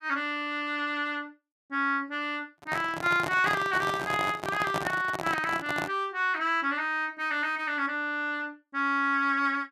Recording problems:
handling noise; from 2.5 to 6 s; peak +1 dB vs average level

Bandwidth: 14.5 kHz